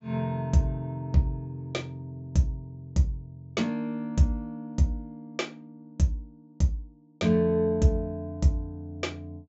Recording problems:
low-pass filter; nothing above 7.5 kHz

